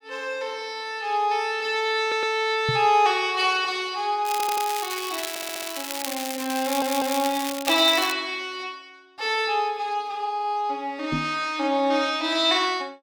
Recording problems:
stutter; 4 times, first at 2 s
microphone thump; at 2.5 s and at 11 s; peak -1 dB vs average level
crackling; from 4.5 to 8 s; loose cable, SNR 7 dB

